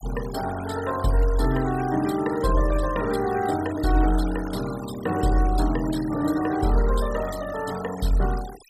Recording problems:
denoising artefacts; signal-to-artefact ratio 16 dB

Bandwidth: 15 kHz